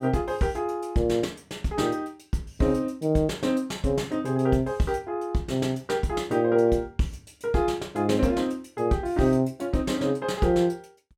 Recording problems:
none

